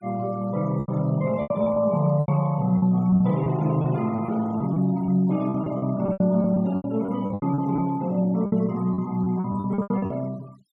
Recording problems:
denoising artefacts; signal-to-artefact ratio 25 dB
lost packets; 14% of the sound replaced, filled with repeated pitch periods

